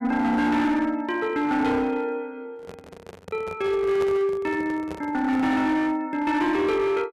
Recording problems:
distortion; hard clipping, uneven, signal-to-distortion ratio 10 dB
handling noise; from 2.5 to 6 s; peak -7 dB vs average level

